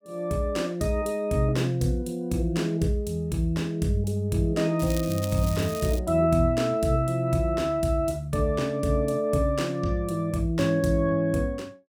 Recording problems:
crackling; from 5 to 6 s; loose cable, SNR 13 dB

